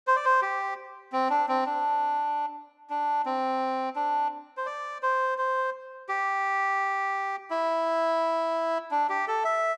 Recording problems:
none

